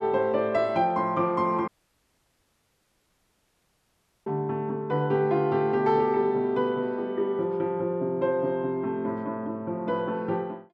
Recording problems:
audio cutting out; at 1.5 s for 2.5 s

